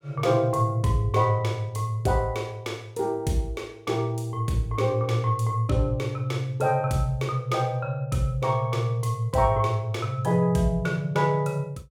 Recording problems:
none

